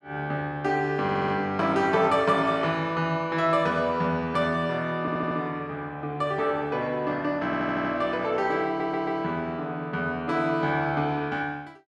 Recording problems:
audio stuttering; 4 times, first at 1 s

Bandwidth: 11.5 kHz